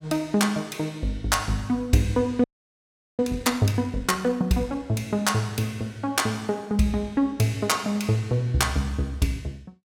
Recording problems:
frozen audio; at 2.5 s for 1 s

